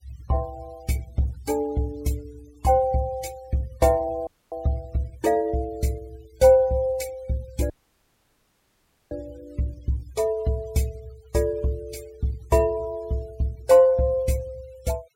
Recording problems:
noise reduction artefacts; signal-to-artefact ratio 24 dB
audio cutting out; at 4.5 s and at 7.5 s for 1.5 s

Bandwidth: 16.5 kHz